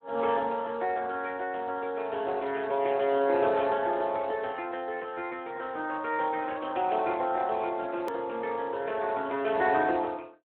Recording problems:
telephone audio; 300 Hz to 3 kHz, Speex
edit click; at 8 s

